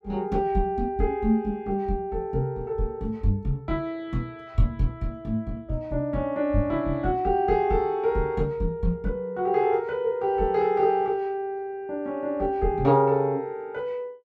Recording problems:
none

